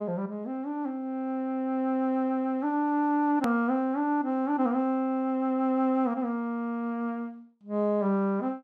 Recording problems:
hard cut with a click; at 3.5 s

